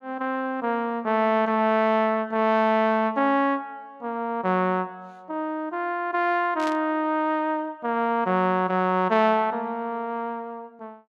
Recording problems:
static burst; at 6.5 s; peak -8 dB vs average level

